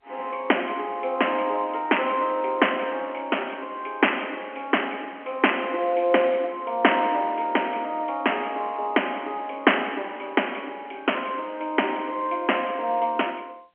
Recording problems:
telephone audio; 280 Hz to 3.2 kHz, G.711

